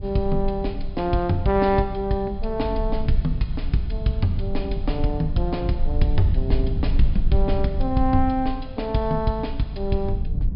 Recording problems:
treble missing; nothing above 5.5 kHz
low-frequency rumble; below 60 Hz, strongest tone 20 Hz, SNR 4 dB

